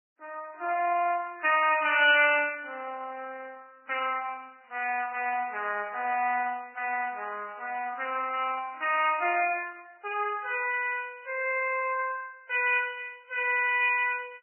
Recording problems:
lossy codec; MP3, then Vorbis, log-spectral distance 3 dB, nothing above 2.4 kHz

